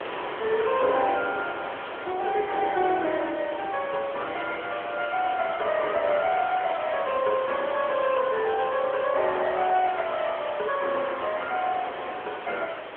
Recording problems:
telephone audio; 280 Hz to 3.4 kHz, AMR-NB
background hiss; SNR 12 dB
wind on the microphone; below 1.5 kHz, SNR 13 dB

